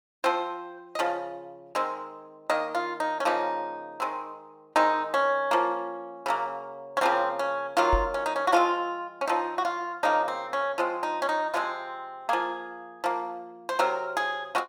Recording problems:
knock on the microphone; at 8 s; peak +3 dB vs average level

